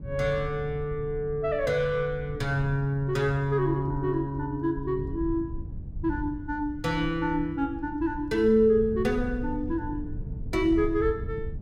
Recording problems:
rumble; below 110 Hz, SNR 11 dB

